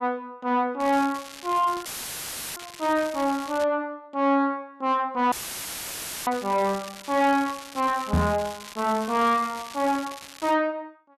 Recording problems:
distortion; soft clipping, signal-to-distortion ratio 10 dB
crackling; from 1 to 3.5 s and from 6.5 to 11 s; loose cable, SNR 15 dB
audio cutting out; at 2 s for 0.5 s and at 5.5 s for 1 s; filled with static
microphone thump; at 8 s; peak +6 dB vs average level

